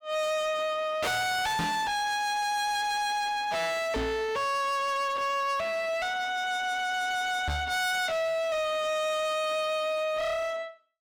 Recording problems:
distorted audio; hard clipping, uneven, signal-to-distortion ratio 6 dB
microphone bump; at 1.5 s, at 4 s and at 7.5 s; peak +3 dB vs average level

